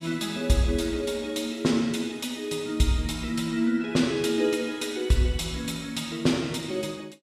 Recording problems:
none

